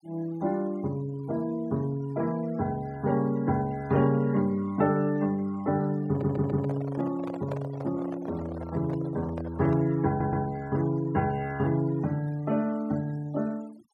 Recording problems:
noise reduction artefacts; signal-to-artefact ratio 23 dB
microphone handling noise; from 6 to 10 s; peak -4 dB vs average level
audio stuttering; at 6 s and at 10 s

